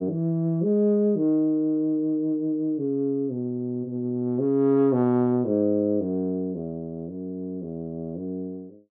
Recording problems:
none

